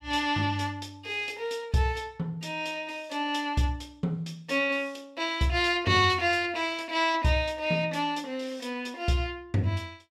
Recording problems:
none

